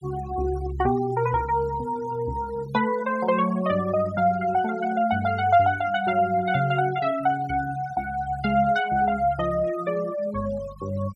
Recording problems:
noise reduction artefacts; signal-to-artefact ratio 18 dB

